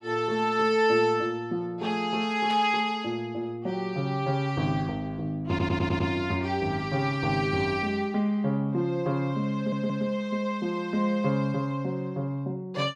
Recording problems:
burst of static; at 2.5 s; peak -9 dB vs average level
stutter; at 5.5 s and at 9.5 s

